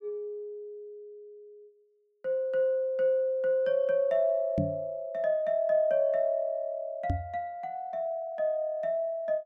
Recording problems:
knock on the microphone; at 4.5 s and at 7 s; peak +3 dB vs average level

